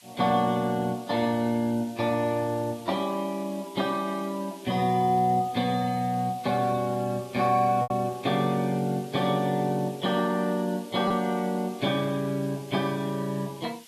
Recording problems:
codec artefacts; AAC, log-spectral distance 4 dB
hiss; SNR 22 dB
lost packets; 0.7% of the sound replaced, filled with repeated pitch periods

